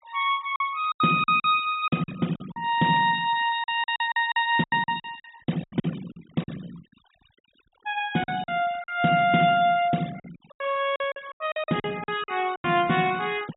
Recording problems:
low-pass filter; nothing above 4 kHz
noise reduction artefacts; signal-to-artefact ratio 21 dB
lost packets; 13% of the sound replaced, filled with silence

